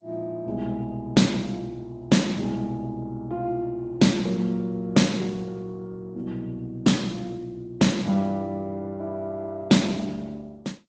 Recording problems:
lossy codec; G.722, then Opus, log-spectral distance 2 dB, nothing above 7.8 kHz

